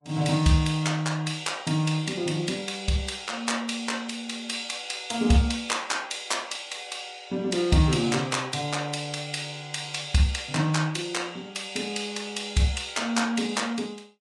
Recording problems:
lossy compression; Vorbis, log-spectral distance 4 dB, nothing above 10.4 kHz

